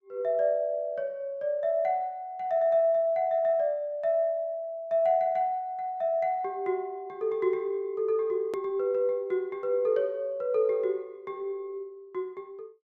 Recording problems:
edit click; at 8.5 s

